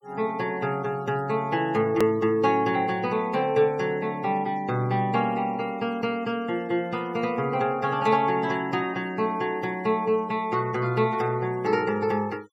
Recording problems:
noise reduction artefacts; signal-to-artefact ratio 26 dB
click at an edit; at 2 s

